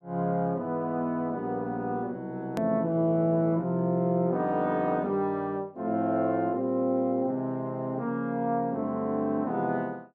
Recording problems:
click at an edit; at 2.5 s

